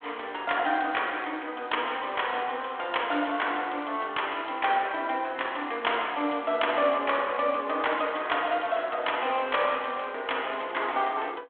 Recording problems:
phone line; 190 Hz to 3.4 kHz, G.726

